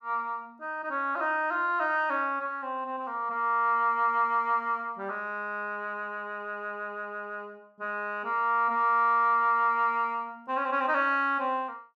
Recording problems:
none

